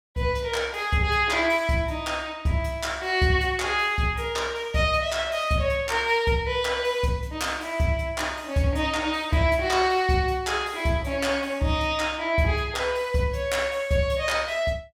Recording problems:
none

